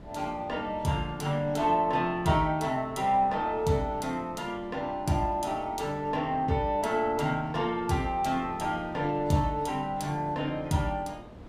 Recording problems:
wind on the microphone; below 450 Hz, SNR 19 dB

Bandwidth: 15.5 kHz